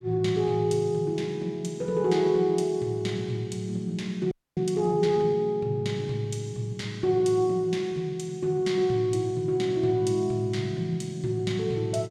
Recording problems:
audio freezing; at 4.5 s

